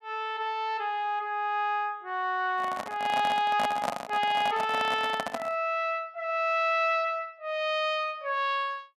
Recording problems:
microphone handling noise; from 2.5 to 5.5 s; peak +2 dB vs average level

